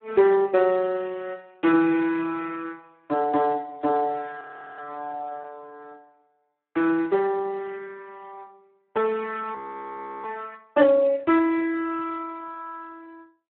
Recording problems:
telephone audio; 260 Hz to 2.7 kHz, Speex
audio freezing; at 4.5 s and at 9.5 s for 0.5 s

